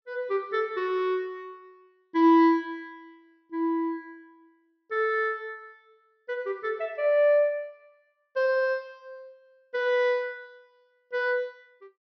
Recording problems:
low-pass filter; nothing above 6 kHz

